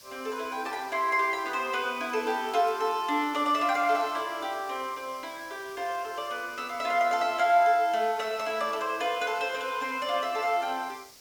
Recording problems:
hiss; SNR 21 dB
crackle; from 2 to 4 s; loose cable, SNR 29 dB

